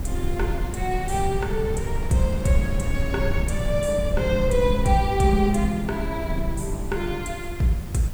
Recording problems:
background hiss; slope 0 dB per octave, SNR 23 dB
rumble; below 94 Hz, SNR 4 dB
wind noise; below 1.2 kHz, SNR 18 dB

